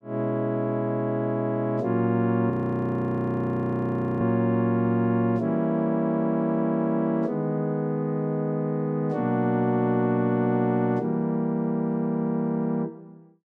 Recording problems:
frozen audio; at 2.5 s for 1.5 s

